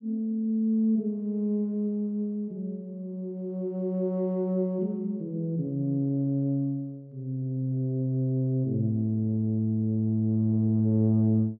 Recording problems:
none

